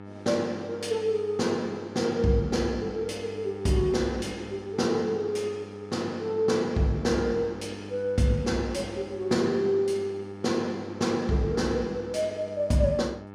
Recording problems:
hum; 50 Hz, harmonics up to 2.2 kHz, SNR 15 dB

